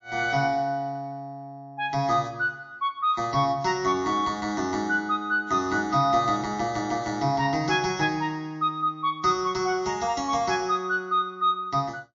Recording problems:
lossy codec; MP3, log-spectral distance 2 dB, nothing above 6.5 kHz

